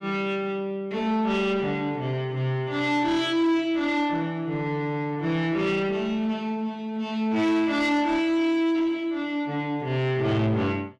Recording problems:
distortion; soft clipping, signal-to-distortion ratio 11 dB

